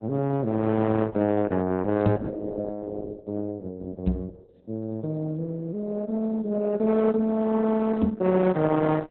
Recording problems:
lossy codec; AAC, then Opus, log-spectral distance 2 dB, nothing above 3.8 kHz
microphone thump; at 2 s, at 4 s and at 8 s; peak +6 dB vs average level

